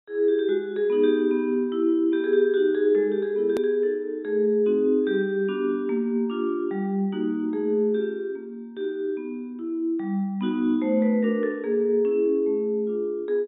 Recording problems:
treble missing; nothing above 4 kHz
click at an edit; at 3.5 s

